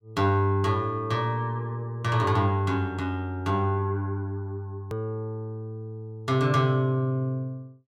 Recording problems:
click at an edit; at 5 s

